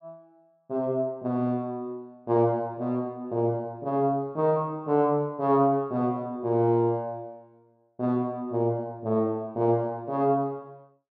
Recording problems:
none

